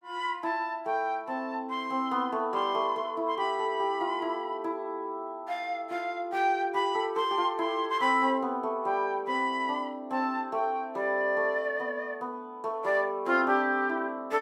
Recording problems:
none

